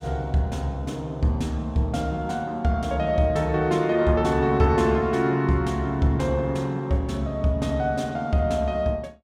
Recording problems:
none

